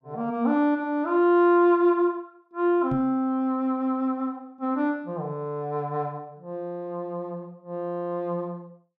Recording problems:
microphone thump; at 3 s; peak -3 dB vs average level

